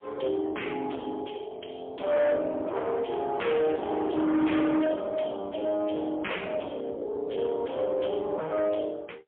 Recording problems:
phone line; 220 Hz to 3.4 kHz, AMR-NB, then MP3
distorted audio; hard clipping, signal-to-distortion ratio 6 dB

